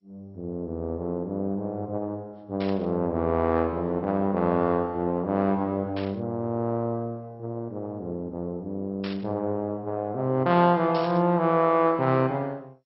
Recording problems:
lossy compression; MP2, log-spectral distance 2 dB, nothing above 4.9 kHz
static burst; 4 times, first at 2.5 s; peak -9 dB vs average level

